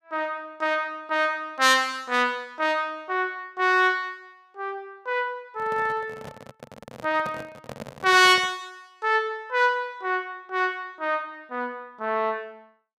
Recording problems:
microphone handling noise; from 5.5 to 8.5 s; peak -8 dB vs average level

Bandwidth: 15.5 kHz